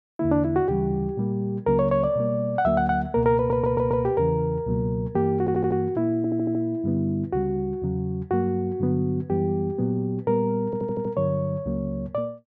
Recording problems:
stutter; 4 times, first at 3.5 s

